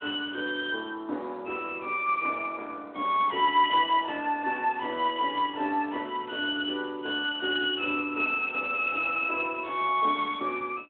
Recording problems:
telephone audio; 240 Hz to 3.5 kHz, Speex

